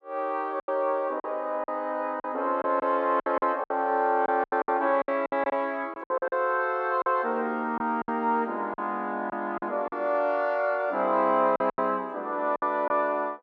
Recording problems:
packet loss; 10% of the sound replaced, filled with silence

